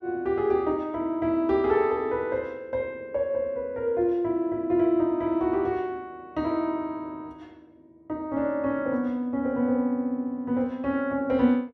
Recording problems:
none

